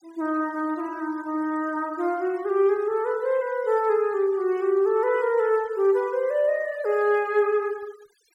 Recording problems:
denoising artefacts; signal-to-artefact ratio 27 dB

